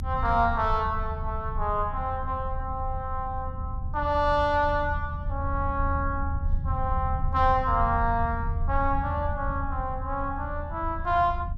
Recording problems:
low-frequency rumble; below 80 Hz, SNR 5 dB

